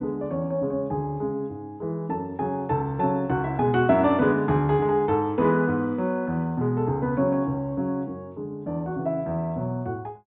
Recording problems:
treble missing; nothing above 4 kHz

